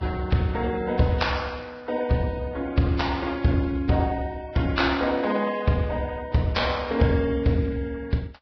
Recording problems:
codec artefacts; Vorbis, then Vorbis, log-spectral distance 3 dB, nothing above 5.3 kHz

